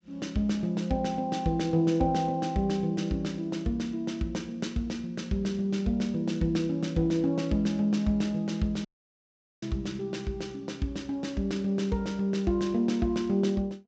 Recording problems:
treble cut off; nothing above 8 kHz
dropout; at 9 s for 1 s

